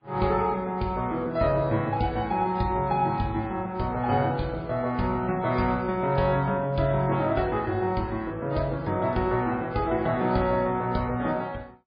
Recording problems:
codec artefacts; MP3, log-spectral distance 2 dB, nothing above 4.6 kHz

